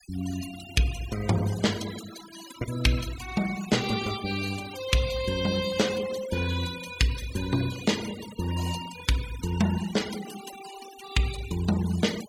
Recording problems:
denoising artefacts; signal-to-artefact ratio 12 dB

